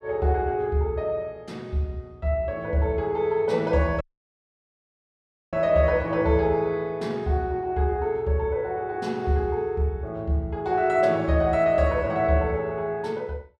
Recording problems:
audio cutting out; at 4 s for 1.5 s

